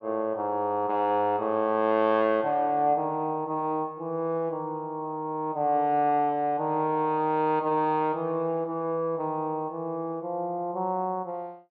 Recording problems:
none

